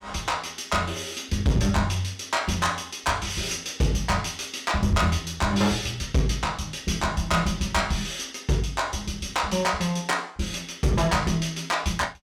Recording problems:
distorted audio; hard clipping, uneven, signal-to-distortion ratio 12 dB

